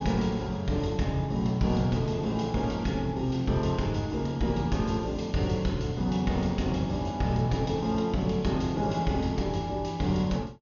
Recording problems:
low-pass filter; nothing above 6.7 kHz

